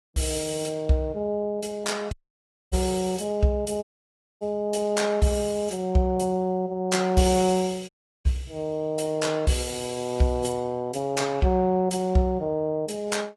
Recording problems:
lossy codec; AAC, log-spectral distance 3 dB, nothing above 11.3 kHz
dropout; at 2 s for 0.5 s, at 4 s for 0.5 s and at 8 s

